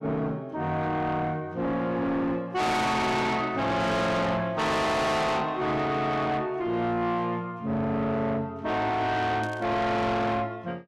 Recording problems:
distortion; soft clipping, signal-to-distortion ratio 6 dB
static burst; at 9.5 s; peak -13 dB vs average level

